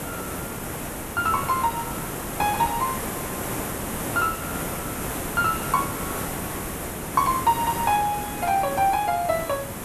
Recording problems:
hiss; SNR 5 dB

